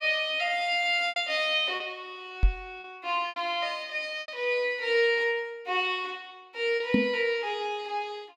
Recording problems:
packet loss; 4% of the sound replaced, filled with repeated pitch periods
microphone bump; at 2.5 s and at 7 s; peak +7 dB vs average level

